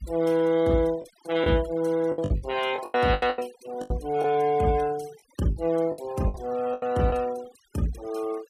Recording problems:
denoising artefacts; signal-to-artefact ratio 20 dB
packet loss; 10% of the sound replaced, filled with the last packet

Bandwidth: 15 kHz